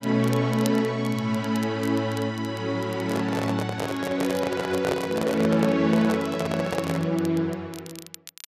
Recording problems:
crackling; vinyl, SNR 19 dB
handling noise; from 3 to 7 s; peak +2 dB vs average level

